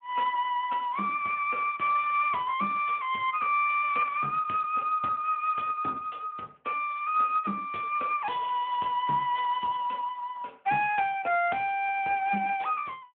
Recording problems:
phone line; 220 Hz to 3.3 kHz, Speex

